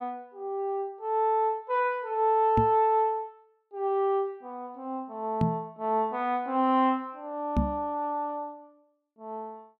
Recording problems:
microphone bump; at 2.5 s, at 5.5 s and at 7.5 s; peak +5 dB vs average level

